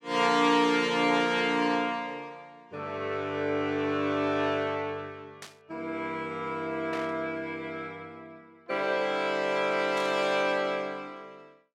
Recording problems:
burst of static; at 5.5 s, at 7 s and at 10 s; peak -8 dB vs average level

